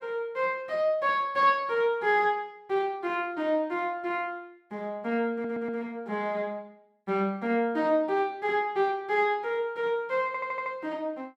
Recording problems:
stutter; at 5.5 s and at 10 s

